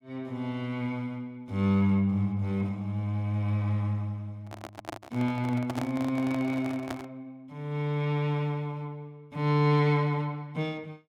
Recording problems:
microphone handling noise; from 4.5 to 7 s; peak -3 dB vs average level

